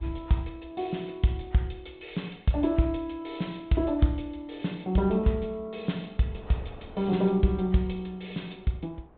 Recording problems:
treble missing; nothing above 4 kHz
wind on the microphone; below 660 Hz, SNR 25 dB

